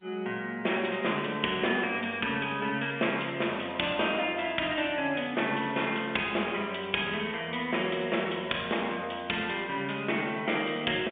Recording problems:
telephone audio; 300 Hz to 3.6 kHz, G.711

